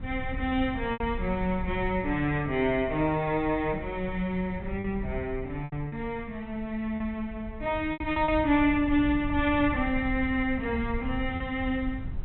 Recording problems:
treble cut off; nothing above 4 kHz
wind on the microphone; below 94 Hz, SNR 11 dB
lost packets; 4% of the sound replaced, filled with repeated pitch periods

